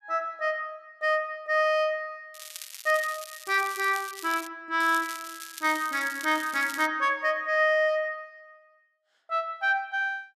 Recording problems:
crackle; from 2.5 to 4.5 s and from 5 to 7 s; loose cable, SNR 14 dB

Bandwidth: 14 kHz